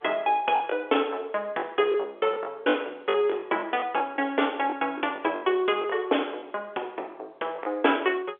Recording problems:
telephone audio; 320 Hz to 3.5 kHz, G.711
packet loss; 8% of the sound replaced, filled with the last packet

